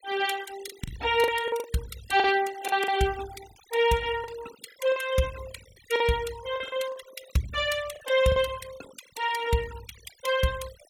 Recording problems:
noise reduction artefacts; signal-to-artefact ratio 17 dB
lost packets; 8% of the sound replaced, filled with the last packet

